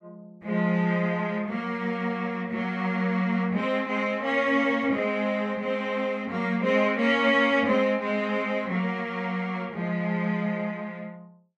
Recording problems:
none

